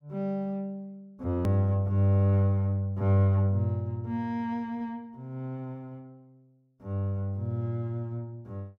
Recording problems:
edit click; at 1.5 s

